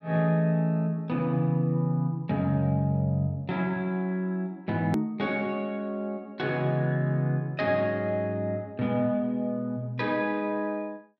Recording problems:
click at an edit; at 5 s

